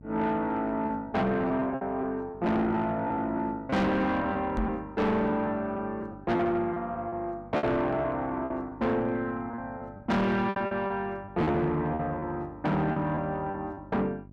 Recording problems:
distorted audio; soft clipping, signal-to-distortion ratio 7 dB
hum; 50 Hz, harmonics up to 650 Hz, SNR 20 dB
lost packets; 8% of the sound replaced, filled with repeated pitch periods
knock on the microphone; at 4.5 s; peak +2 dB vs average level

